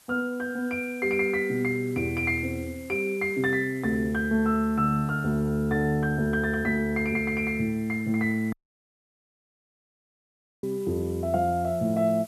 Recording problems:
background hiss; slope 0 dB per octave, SNR 25 dB
dropout; at 8.5 s for 2 s

